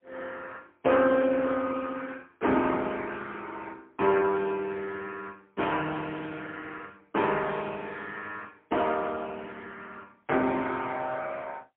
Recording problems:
telephone audio; 220 Hz to 3.4 kHz, AMR-NB, then MP3

